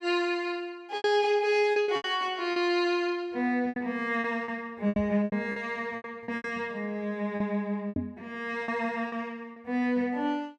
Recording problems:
packet loss; 10% of the sound replaced, filled with repeated pitch periods
knock on the microphone; at 5 s and at 8 s; peak +1 dB vs average level

